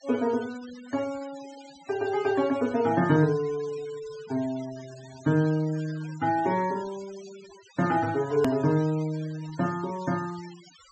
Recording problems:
treble missing; nothing above 8 kHz
noise reduction artefacts; signal-to-artefact ratio 20 dB
edit click; at 8.5 s

